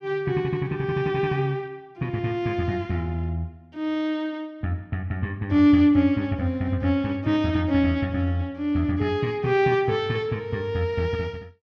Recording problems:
none

